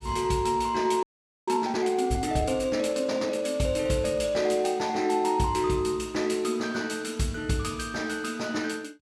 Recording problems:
audio freezing; at 1 s

